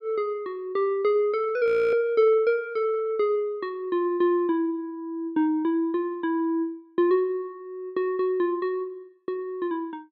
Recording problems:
frozen audio; at 1.5 s

